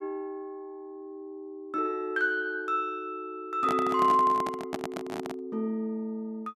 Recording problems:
microphone handling noise; from 3.5 to 5.5 s; peak -1 dB vs average level

